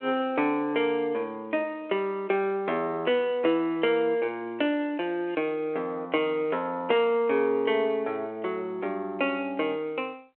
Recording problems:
phone line; 280 Hz to 3.5 kHz, G.726

